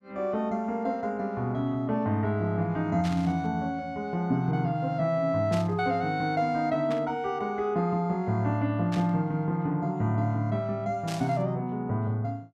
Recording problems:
static burst; 5 times, first at 3 s; peak -7 dB vs average level

